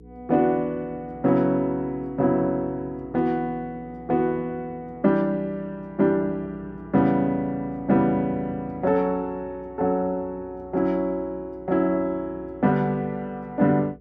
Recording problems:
electrical hum; 60 Hz, harmonics up to 480 Hz, SNR 24 dB

